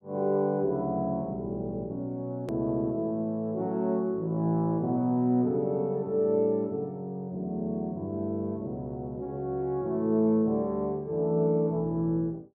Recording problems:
hard cut with a click; at 2.5 s

